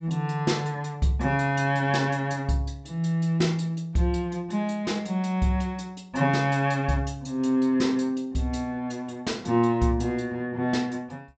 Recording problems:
low-pass filter; nothing above 8 kHz

